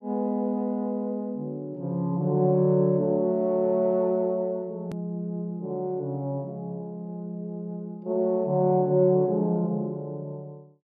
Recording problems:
click at an edit; at 5 s

